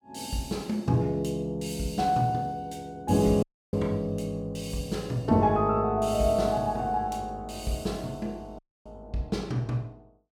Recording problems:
dropout; at 3.5 s and at 8.5 s

